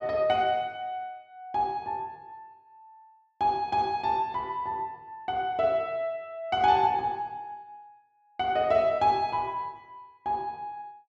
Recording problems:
none

